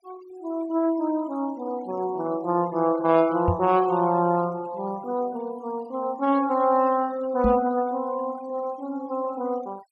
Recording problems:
noise reduction artefacts; signal-to-artefact ratio 23 dB
microphone thump; at 3.5 s and at 7.5 s; peak +4 dB vs average level

